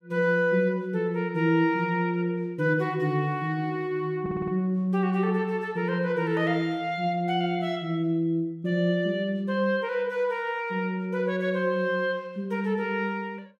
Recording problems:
audio stuttering; at 4 s

